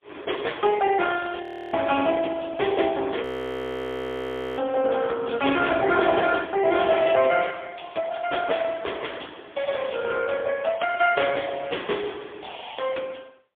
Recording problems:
phone line; 300 Hz to 3.4 kHz, AMR-NB, then MP3
frozen audio; at 1.5 s and at 3 s for 1.5 s

